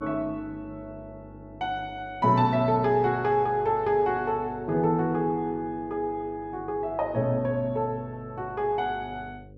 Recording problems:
hum; 50 Hz, harmonics up to 550 Hz, SNR 21 dB

